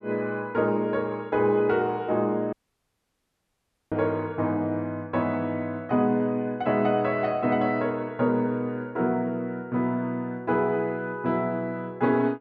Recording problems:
dropout; at 2.5 s for 1.5 s

